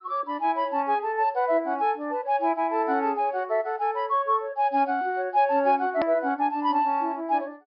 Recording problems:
treble missing; nothing above 5.2 kHz
click at an edit; at 6 s

